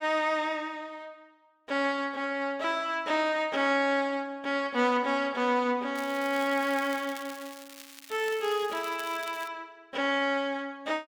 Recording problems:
crackling; at 6 s and from 7 to 9.5 s; loose cable, SNR 17 dB

